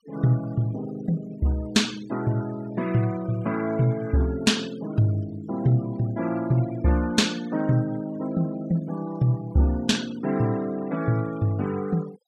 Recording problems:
noise reduction artefacts; signal-to-artefact ratio 20 dB

